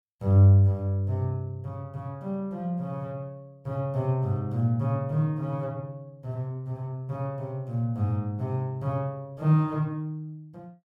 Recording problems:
none

